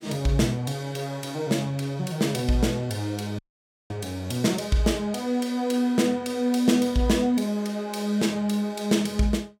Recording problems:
dropout; at 3.5 s for 0.5 s

